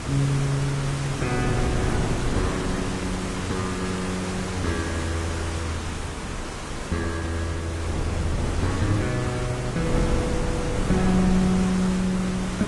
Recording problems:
lossy compression; AAC, then Vorbis, log-spectral distance 5 dB
background hiss; slope -4 dB per octave, SNR 6 dB
wind noise; below 280 Hz, SNR 4 dB

